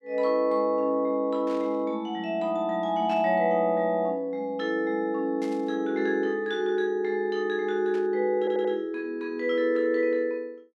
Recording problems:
burst of static; 4 times, first at 1.5 s; peak -14 dB vs average level
stutter; at 8.5 s

